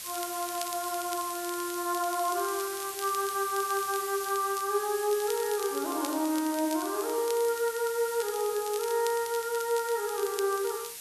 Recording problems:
hiss; SNR 8 dB
crackling; vinyl, SNR 15 dB

